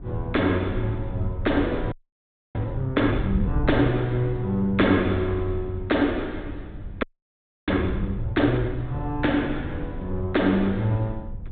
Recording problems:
treble missing; nothing above 4 kHz
hum; 50 Hz, harmonics up to 1 kHz, SNR 21 dB
wind on the microphone; below 86 Hz, SNR 10 dB
frozen audio; at 2 s for 0.5 s and at 7 s for 0.5 s

